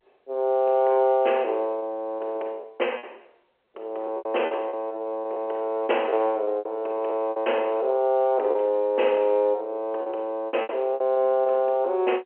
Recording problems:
telephone audio; 320 Hz to 3.1 kHz, G.711
packet loss; 9% of the sound replaced, filled with repeated pitch periods

